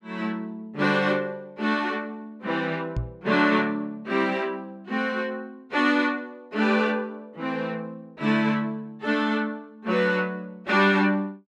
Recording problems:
knock on the microphone; at 3 s; peak 0 dB vs average level

